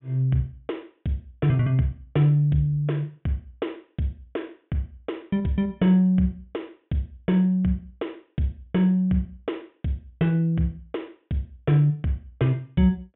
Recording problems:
low-pass filter; nothing above 3.5 kHz

